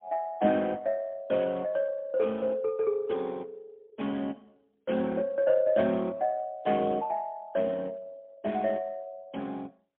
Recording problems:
phone line; 150 Hz to 3.4 kHz, AMR-NB, then MP3

